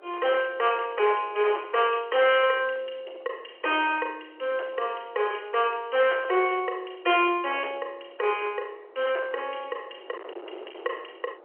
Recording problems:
phone line; 320 Hz to 3.2 kHz, G.711
distorted audio; hard clipping, uneven, signal-to-distortion ratio 13 dB
wind noise; below 1.2 kHz, SNR 21 dB

